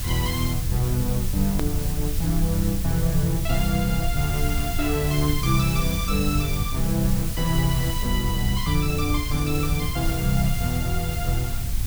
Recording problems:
electrical hum; 60 Hz, harmonics up to 480 Hz, SNR 15 dB
hiss; slope +1 dB per octave, SNR 7 dB
rumble; below 78 Hz, SNR 4 dB
click at an edit; at 1.5 s

